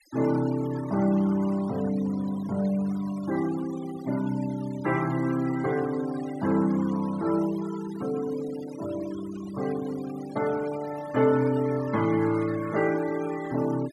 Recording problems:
noise reduction artefacts; signal-to-artefact ratio 17 dB

